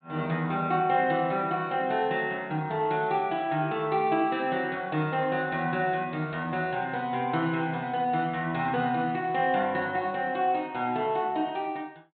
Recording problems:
treble cut off; nothing above 4 kHz

